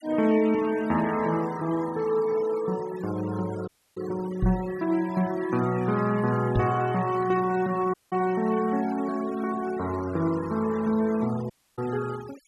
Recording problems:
denoising artefacts; signal-to-artefact ratio 18 dB
dropout; at 3.5 s, at 8 s and at 12 s
knock on the microphone; at 4.5 s and at 6.5 s; peak +4 dB vs average level

